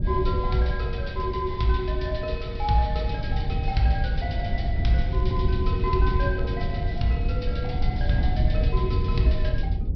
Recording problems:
treble missing; nothing above 5.5 kHz
low-frequency rumble; below 100 Hz, SNR 0 dB
crackling; from 5 to 8 s and at 8.5 s; loose cable, SNR 28 dB

